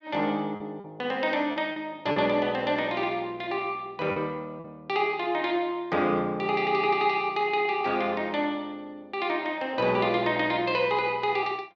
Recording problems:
packet loss; 2% of the sound replaced, filled with repeated pitch periods

